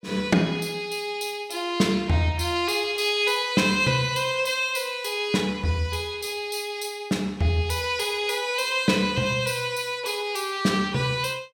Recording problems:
none

